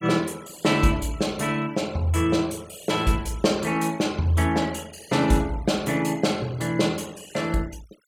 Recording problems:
noise reduction artefacts; signal-to-artefact ratio 22 dB

